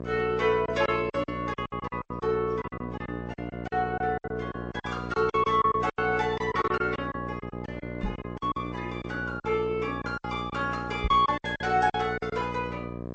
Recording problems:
codec artefacts; MP3, then G.722, log-spectral distance 2 dB
mains hum; 60 Hz, harmonics up to 1.3 kHz, SNR 9 dB
packet loss; 13% of the sound replaced, filled with silence
microphone thump; at 8 s and at 11 s; peak +2 dB vs average level

